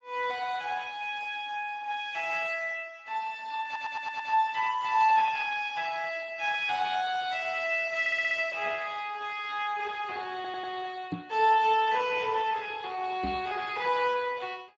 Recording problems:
lossy compression; Speex, log-spectral distance 4 dB
audio stuttering; at 3.5 s, at 8 s and at 10 s
microphone bump; at 11 s and at 13 s; peak -1 dB vs average level

